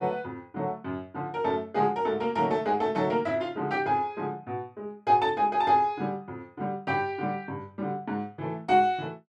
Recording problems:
none

